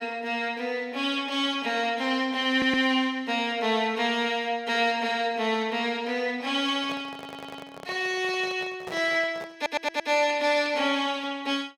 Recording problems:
audio stuttering; at 2.5 s, at 7 s and at 9.5 s
handling noise; from 7 to 10 s; peak -9 dB vs average level

